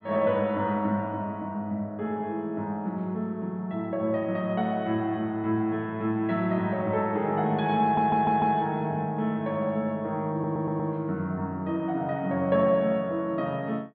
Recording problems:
treble cut off; nothing above 4.6 kHz
audio stuttering; at 8 s and at 10 s

